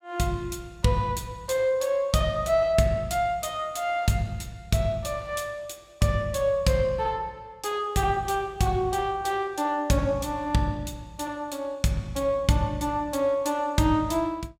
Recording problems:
none

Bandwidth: 16 kHz